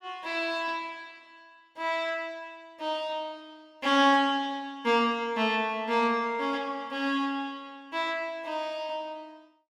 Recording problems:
none

